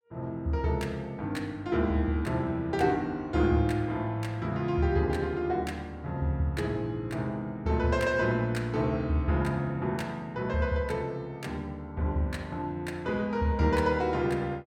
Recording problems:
none

